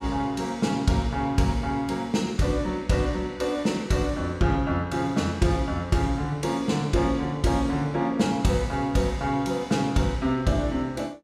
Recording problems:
none

